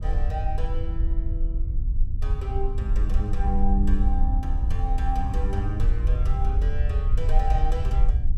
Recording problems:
rumble; below 58 Hz, SNR -7 dB

